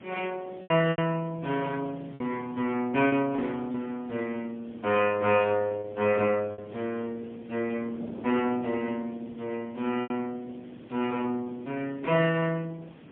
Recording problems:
telephone audio; 240 Hz to 3.5 kHz, AMR-NB, then MP3
background hiss; SNR 27 dB
wind on the microphone; below 470 Hz, SNR 19 dB
lost packets; 4% of the sound replaced, filled with repeated pitch periods

